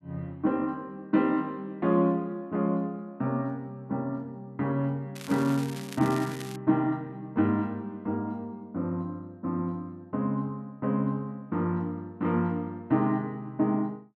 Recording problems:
crackling; from 5 to 6.5 s; loose cable, SNR 15 dB

